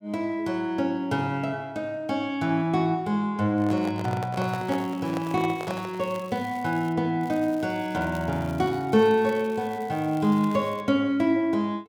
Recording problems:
microphone handling noise; from 3.5 to 6 s; peak -4 dB vs average level
crackle; from 4.5 to 7 s and from 7 to 11 s; loose cable, SNR 24 dB

